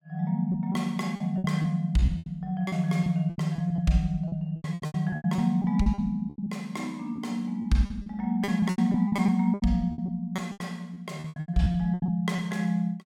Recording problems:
packet loss; 16% of the sound replaced, filled with repeated pitch periods

